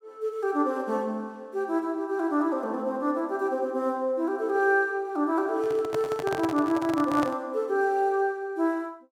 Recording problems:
handling noise; from 5.5 to 7.5 s; peak -1 dB vs average level

